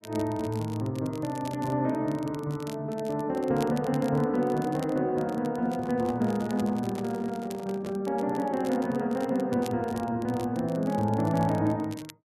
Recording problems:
crackle; vinyl, SNR 21 dB
handling noise; from 5.5 to 8 s; peak -9 dB vs average level

